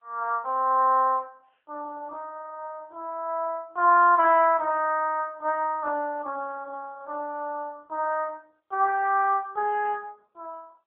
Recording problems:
phone line; 260 Hz to 2.6 kHz, AMR-NB

